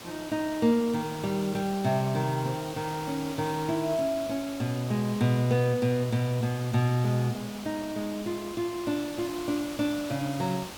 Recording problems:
background hiss; slope -3 dB per octave, SNR 13 dB

